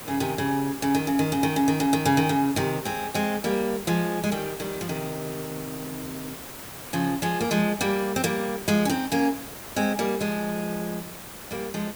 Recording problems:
hiss; slope -4 dB per octave, SNR 12 dB

